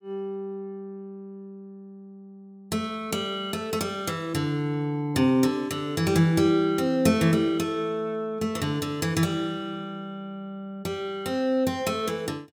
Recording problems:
none

